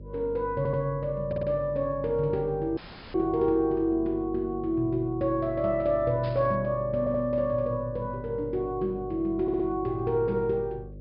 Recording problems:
low-pass filter; nothing above 5.5 kHz
mains hum; 50 Hz, harmonics up to 600 Hz, SNR 16 dB
stutter; 4 times, first at 0.5 s
audio cutting out; at 3 s
burst of static; at 6 s; peak -14 dB vs average level

